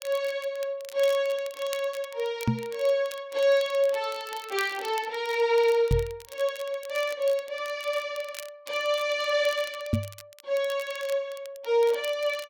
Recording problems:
crackling; vinyl, SNR 18 dB
microphone thump; at 2.5 s, at 6 s and at 10 s; peak +6 dB vs average level

